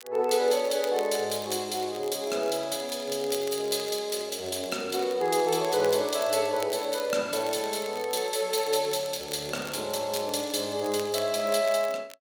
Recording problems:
crackle; vinyl, SNR 18 dB

